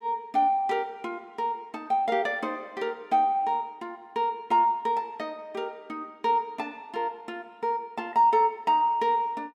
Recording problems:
none

